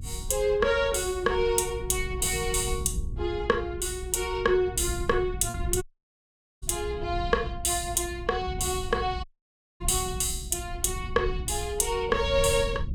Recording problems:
rumble; below 100 Hz, SNR 10 dB
packet loss; 0.5% of the sound replaced, filled with repeated pitch periods
audio cutting out; at 6 s for 1 s and at 9 s for 0.5 s

